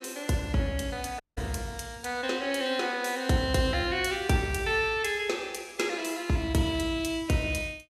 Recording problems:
audio cutting out; at 1 s

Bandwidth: 15 kHz